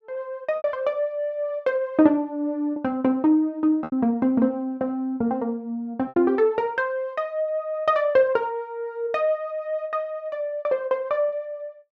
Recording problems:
lost packets; 3% of the sound replaced, filled with repeated pitch periods

